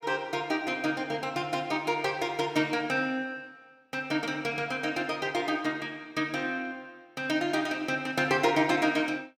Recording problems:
none

